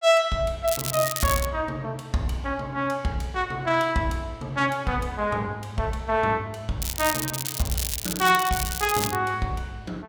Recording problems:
crackling; at 0.5 s and from 7 to 9 s; loose cable, SNR 3 dB

